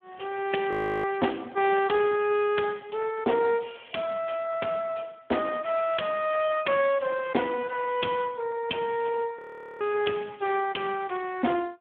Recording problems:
phone line; 190 Hz to 3.3 kHz, Speex
audio freezing; at 0.5 s and at 9.5 s

